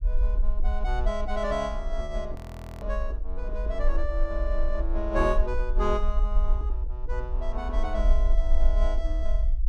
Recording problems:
rumble; below 44 Hz, SNR -3 dB
frozen audio; at 2.5 s

